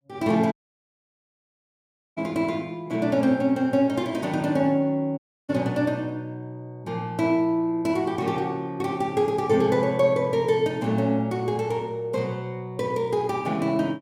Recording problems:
dropout; at 0.5 s for 1.5 s and at 5 s

